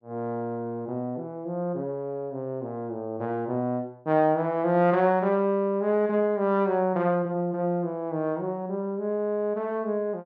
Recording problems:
none

